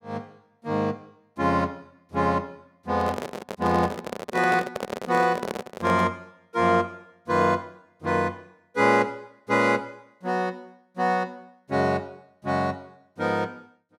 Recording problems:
microphone handling noise; from 3 to 6 s; peak -1 dB vs average level

